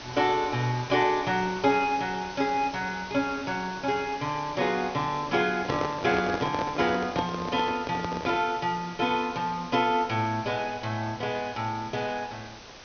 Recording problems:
treble missing; nothing above 6.3 kHz
background hiss; slope -2 dB per octave, SNR 15 dB
handling noise; from 5.5 to 8.5 s; peak +2 dB vs average level

